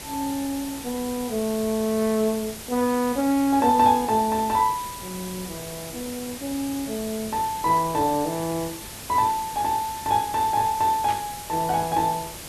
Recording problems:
hiss; slope -2 dB per octave, SNR 12 dB
static burst; at 11 s; peak -8 dB vs average level

